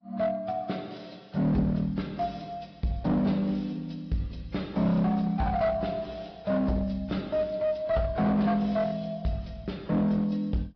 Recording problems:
treble cut off; nothing above 5.2 kHz
lossy codec; AAC, log-spectral distance 2 dB
distorted audio; hard clipping, uneven, signal-to-distortion ratio 10 dB

